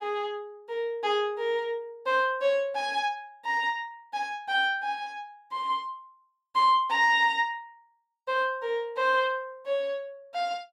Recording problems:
none

